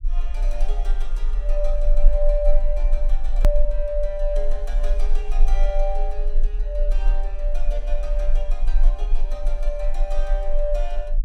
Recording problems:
rumble; below 34 Hz, strongest tone 20 Hz, SNR -6 dB
click at an edit; at 3.5 s

